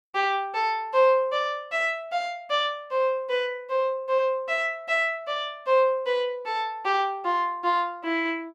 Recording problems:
none

